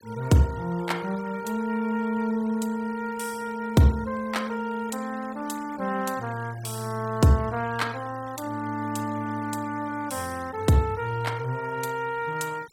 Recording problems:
noise reduction artefacts; signal-to-artefact ratio 21 dB

